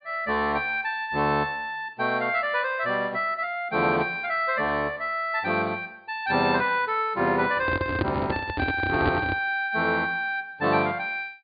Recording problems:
low-pass filter; nothing above 4.8 kHz
microphone handling noise; from 7.5 to 9.5 s; peak +3 dB vs average level

